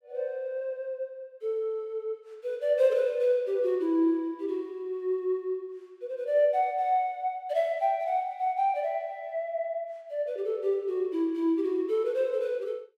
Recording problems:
none

